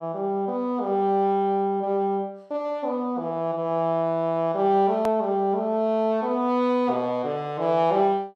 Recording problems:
hard cut with a click; at 5 s

